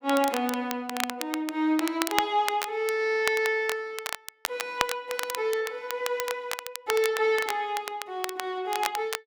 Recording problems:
crackling; vinyl, SNR 6 dB

